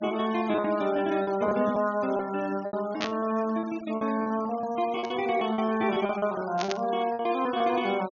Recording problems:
treble missing; nothing above 6.8 kHz
noise reduction artefacts; signal-to-artefact ratio 19 dB
lost packets; 12% of the sound replaced, filled with repeated pitch periods
static burst; at 3 s, at 5 s and at 6.5 s; peak +1 dB vs average level

